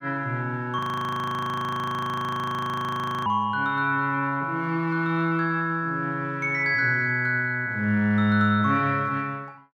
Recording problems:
frozen audio; at 1 s for 2.5 s

